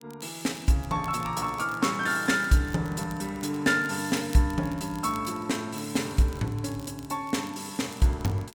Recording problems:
crackling; vinyl, SNR 23 dB

